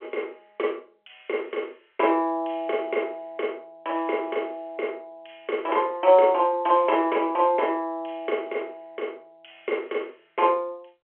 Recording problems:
telephone audio; 280 Hz to 3.2 kHz, G.711

